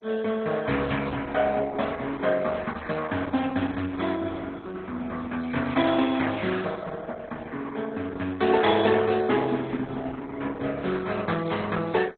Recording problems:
codec artefacts; Opus, then MP2, log-spectral distance 4 dB

